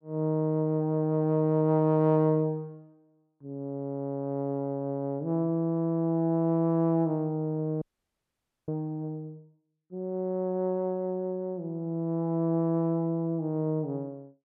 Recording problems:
audio freezing; at 8 s for 1 s

